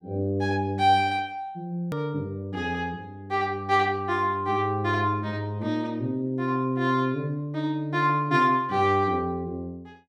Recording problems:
hard cut with a click; at 2 s

